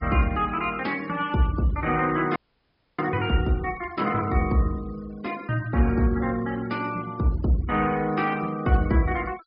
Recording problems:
treble cut off; nothing above 5.5 kHz
denoising artefacts; signal-to-artefact ratio 22 dB
frozen audio; at 2.5 s for 0.5 s

